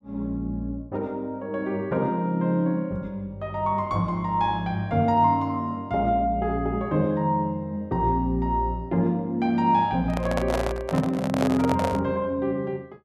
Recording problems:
handling noise; from 10 to 12 s; peak +2 dB vs average level

